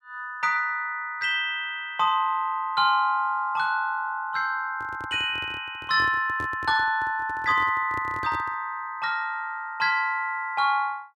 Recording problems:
microphone handling noise; from 4.5 to 8.5 s; peak -9 dB vs average level

